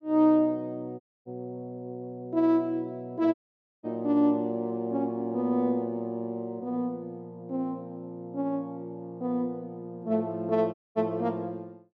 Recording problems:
audio cutting out; at 1 s, at 3.5 s and at 11 s

